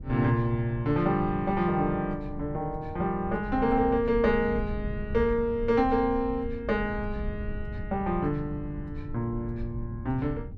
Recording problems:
rumble; below 110 Hz, SNR 11 dB

